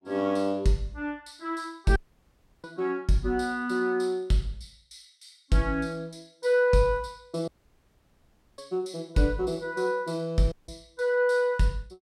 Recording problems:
audio cutting out; at 2 s for 0.5 s, at 7.5 s for 1 s and at 11 s

